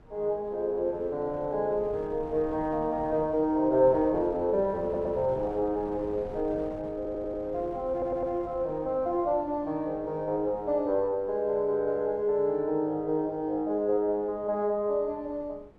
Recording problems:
wind on the microphone; below 460 Hz, SNR 20 dB
stutter; at 5 s, at 7 s and at 8 s

